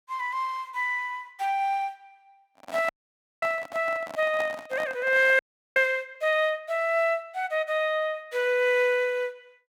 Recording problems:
handling noise; from 2.5 to 6 s; peak -6 dB vs average level
audio freezing; at 3 s for 0.5 s and at 5.5 s

